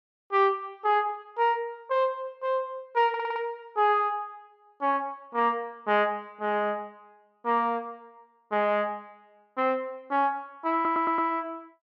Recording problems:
stutter; at 3 s and at 11 s

